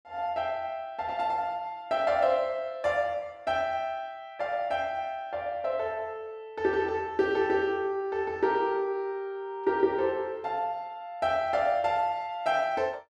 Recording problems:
none

